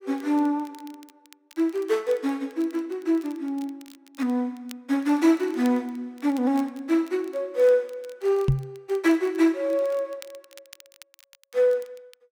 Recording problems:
crackling; vinyl, SNR 27 dB
microphone thump; at 8.5 s; peak +7 dB vs average level

